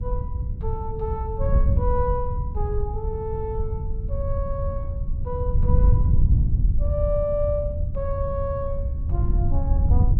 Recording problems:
wind noise; below 90 Hz, SNR -5 dB

